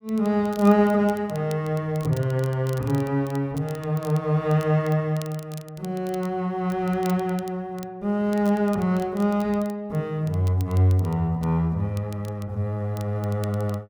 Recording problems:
crackling; vinyl, SNR 23 dB

